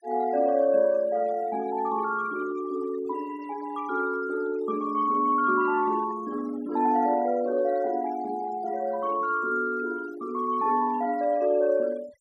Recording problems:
noise reduction artefacts; signal-to-artefact ratio 23 dB

